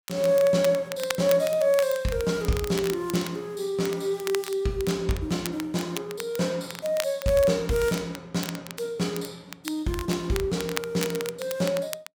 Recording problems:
crackling; vinyl, SNR 12 dB

